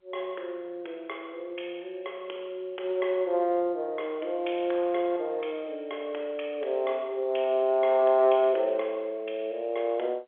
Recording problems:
phone line; 340 Hz to 3.4 kHz, G.711

